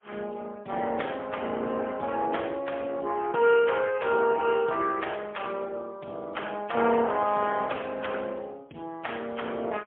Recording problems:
telephone audio; 220 Hz to 3.4 kHz, AMR-NB, then MP3

